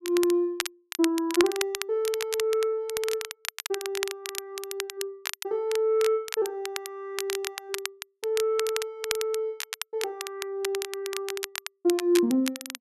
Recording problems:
crackle; vinyl, SNR 7 dB

